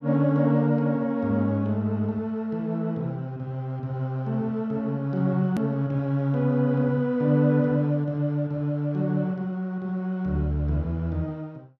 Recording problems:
hard cut with a click; at 5.5 s

